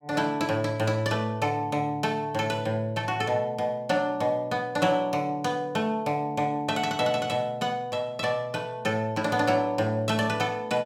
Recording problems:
none

